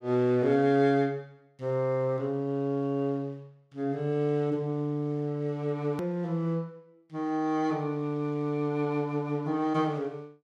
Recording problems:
edit click; at 6 s

